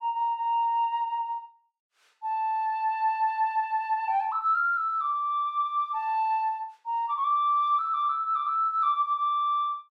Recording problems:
none

